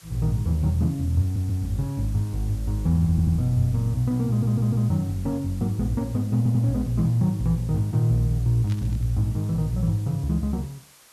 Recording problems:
background hiss; slope 0 dB per octave, SNR 25 dB
audio stuttering; 4 times, first at 1 s
static burst; at 8.5 s; peak -15 dB vs average level

